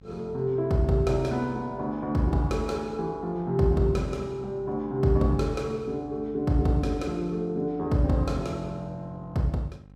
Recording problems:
hum; 50 Hz, harmonics up to 800 Hz, SNR 23 dB

